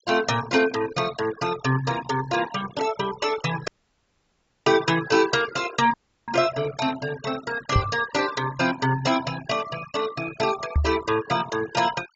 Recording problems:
treble missing; nothing above 8 kHz
noise reduction artefacts; signal-to-artefact ratio 13 dB
audio cutting out; at 3.5 s for 1 s and at 6 s
microphone bump; at 8 s and at 11 s; peak +7 dB vs average level

